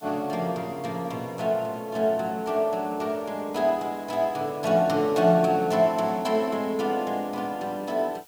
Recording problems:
hiss; SNR 26 dB

